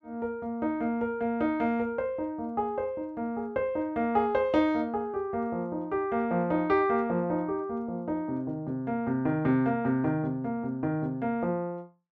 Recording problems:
none

